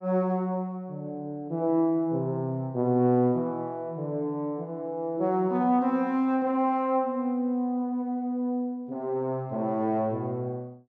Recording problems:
none

